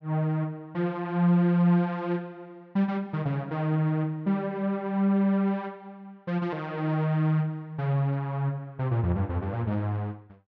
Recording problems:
none

